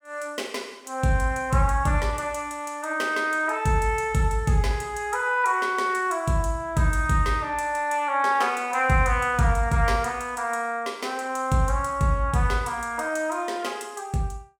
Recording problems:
none

